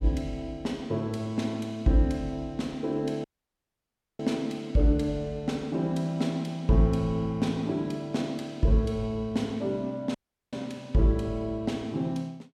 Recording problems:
audio cutting out; at 3 s for 1 s and at 10 s

